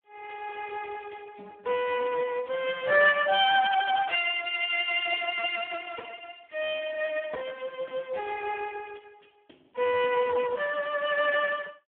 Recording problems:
telephone audio; 220 Hz to 2.8 kHz, Speex

